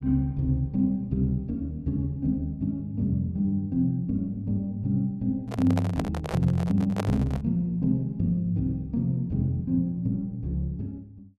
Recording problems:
handling noise; from 5.5 to 7.5 s; peak +1 dB vs average level

